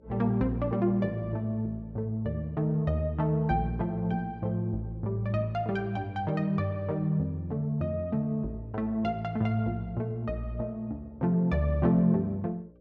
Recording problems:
electrical hum; 60 Hz, harmonics up to 600 Hz, SNR 29 dB

